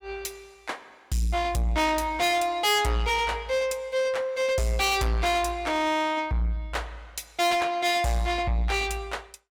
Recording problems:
distortion; soft clipping, signal-to-distortion ratio 6 dB

